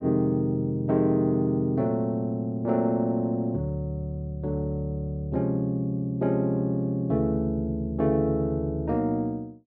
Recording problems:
none

